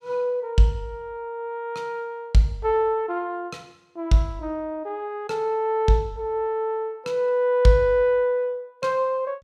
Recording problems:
none

